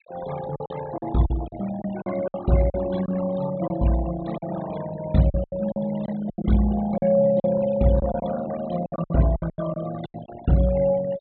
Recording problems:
treble missing; nothing above 4 kHz
denoising artefacts; signal-to-artefact ratio 15 dB
lost packets; 11% of the sound replaced, filled with silence

